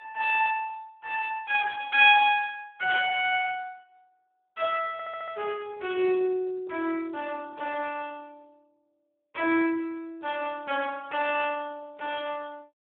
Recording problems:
phone line; 320 Hz to 3.5 kHz, Speex
static burst; at 3 s; peak -5 dB vs average level
audio stuttering; at 5 s

